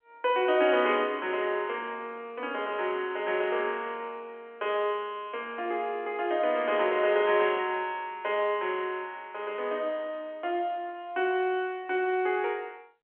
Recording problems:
telephone audio; 260 Hz to 3.4 kHz, G.711

